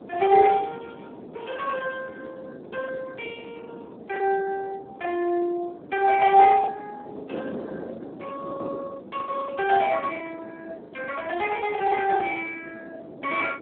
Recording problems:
telephone audio; 280 Hz to 3.3 kHz, Speex
wind noise; below 530 Hz, SNR 16 dB
packet loss; 8% of the sound replaced, filled with the last packet

